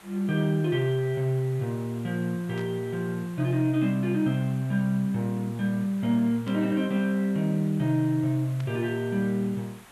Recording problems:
background hiss; SNR 23 dB
static burst; at 2.5 s, at 6.5 s and at 8.5 s; peak -14 dB vs average level

